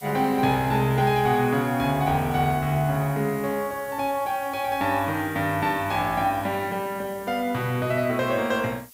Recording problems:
background hiss; slope +1 dB per octave, SNR 20 dB

